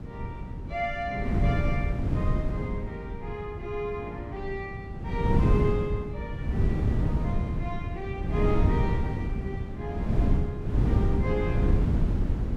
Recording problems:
wind noise; below 180 Hz, SNR -6 dB

